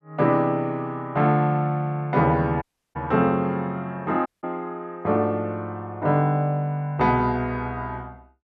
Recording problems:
audio cutting out; at 2.5 s and at 4.5 s

